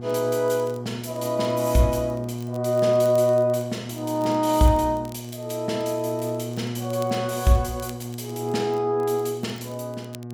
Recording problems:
electrical hum; 60 Hz, harmonics up to 1.1 kHz, SNR 10 dB
crackle; vinyl, SNR 26 dB

